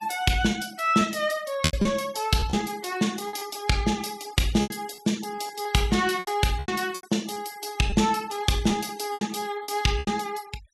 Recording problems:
denoising artefacts; signal-to-artefact ratio 20 dB
packet loss; 9% of the sound replaced, filled with repeated pitch periods

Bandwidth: 15 kHz